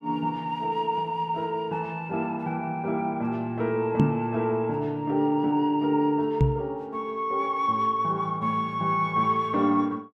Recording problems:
microphone thump; at 4 s and at 6.5 s; peak +9 dB vs average level

